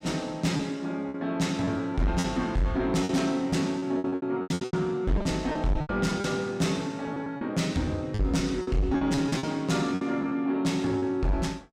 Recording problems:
distortion; soft clipping, signal-to-distortion ratio 11 dB
lost packets; 12% of the sound replaced, filled with repeated pitch periods

